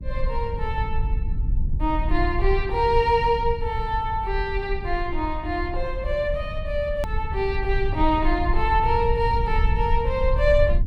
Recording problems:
rumble; below 64 Hz, SNR 4 dB
click at an edit; at 7 s

